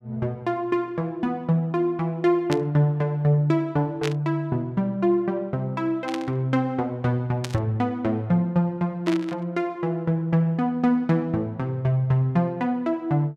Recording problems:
static burst; 5 times, first at 2.5 s; peak -2 dB vs average level

